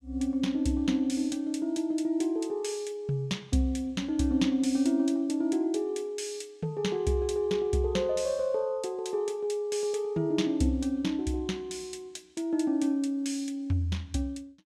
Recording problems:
none

